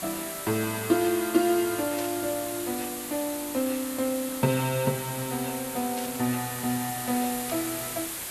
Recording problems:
background hiss; slope -1 dB per octave, SNR 5 dB
static burst; at 2 s, at 6 s and at 7.5 s; peak -6 dB vs average level

